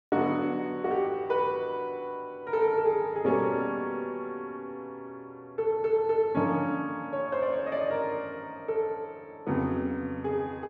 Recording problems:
none

